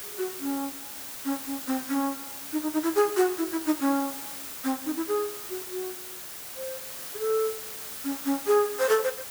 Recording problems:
hiss; slope -1 dB per octave, SNR 7 dB

